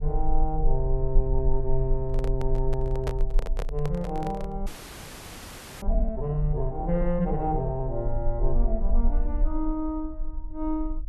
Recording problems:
rumble; below 38 Hz, strongest tone 20 Hz, SNR 1 dB
handling noise; from 2 to 4.5 s; peak +1 dB vs average level
frozen audio; at 4.5 s for 1 s

